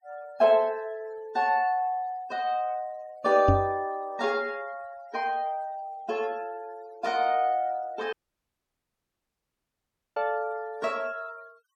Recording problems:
noise reduction artefacts; signal-to-artefact ratio 26 dB
knock on the microphone; at 3.5 s; peak +8 dB vs average level
audio cutting out; at 8 s for 2 s

